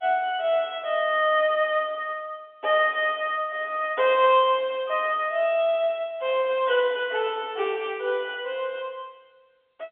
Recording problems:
phone line; 300 Hz to 3.6 kHz, G.711

